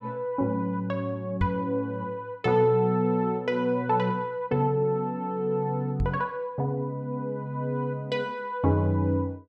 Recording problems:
microphone bump; at 1.5 s and at 6 s; peak +3 dB vs average level

